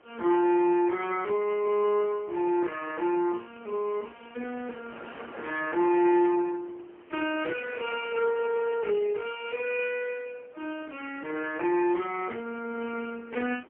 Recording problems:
telephone audio; 260 Hz to 3.1 kHz, AMR-NB, then MP3
wind on the microphone; below 1.6 kHz, SNR 23 dB

